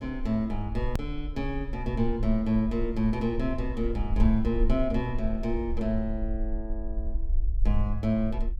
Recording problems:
low-frequency rumble; below 52 Hz, SNR 4 dB
edit click; at 1 s

